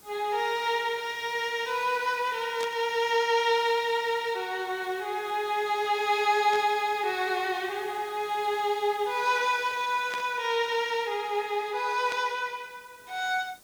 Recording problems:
hiss; SNR 25 dB
burst of static; 4 times, first at 2.5 s; peak -6 dB vs average level

